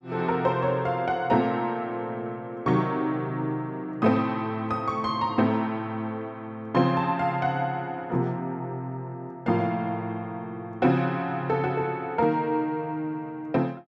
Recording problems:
none

